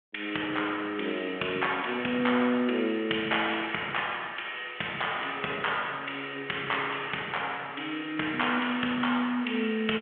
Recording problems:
phone line; 220 Hz to 3.4 kHz, G.726

